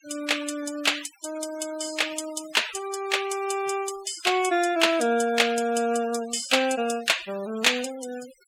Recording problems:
noise reduction artefacts; signal-to-artefact ratio 16 dB

